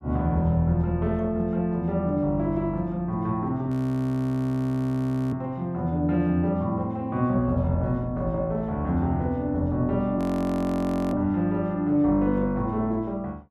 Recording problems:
audio freezing; at 3.5 s for 1.5 s and at 10 s for 1 s

